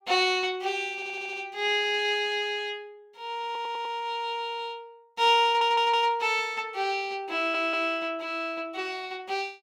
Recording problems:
audio stuttering; 4 times, first at 1 s

